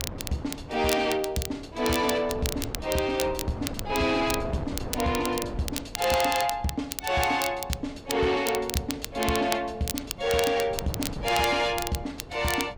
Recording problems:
distorted audio; soft clipping, signal-to-distortion ratio 11 dB
wind noise; below 470 Hz, SNR 13 dB
crackling; vinyl, SNR 8 dB

